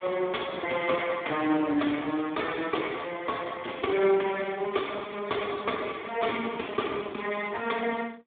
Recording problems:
phone line; 240 Hz to 2.2 kHz, Speex

